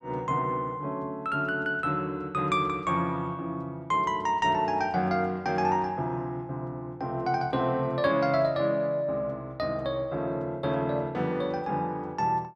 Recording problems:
none

